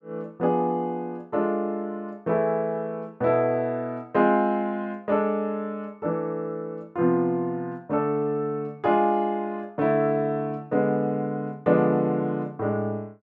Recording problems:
none

